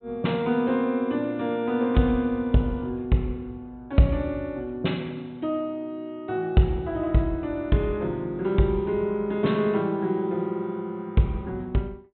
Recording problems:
low-pass filter; nothing above 4 kHz

